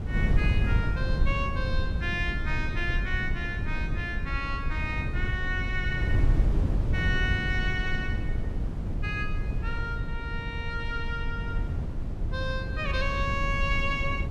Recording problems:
wind noise; below 110 Hz, SNR -2 dB

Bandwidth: 14 kHz